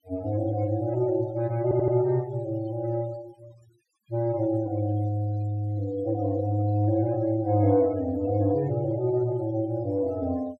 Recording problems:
noise reduction artefacts; signal-to-artefact ratio 26 dB
stutter; at 1.5 s

